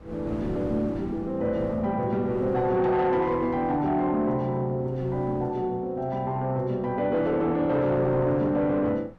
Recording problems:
distortion; soft clipping, signal-to-distortion ratio 11 dB
wind on the microphone; below 430 Hz, SNR 18 dB

